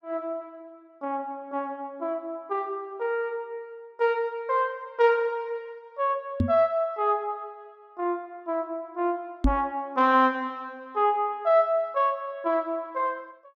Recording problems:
microphone thump; at 6.5 s and at 9.5 s; peak +7 dB vs average level

